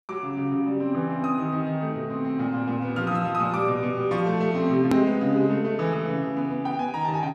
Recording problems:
edit click; at 5 s

